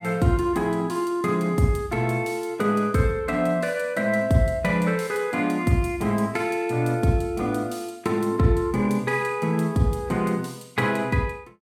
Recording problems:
none

